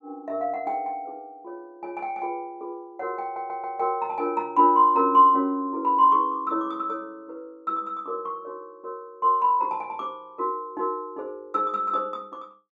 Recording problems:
audio stuttering; at 3 s

